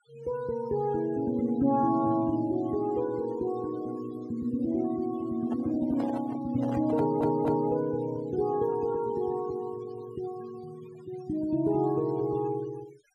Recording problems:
noise reduction artefacts; signal-to-artefact ratio 21 dB
handling noise; from 5.5 to 7.5 s; peak -5 dB vs average level
stutter; at 7 s

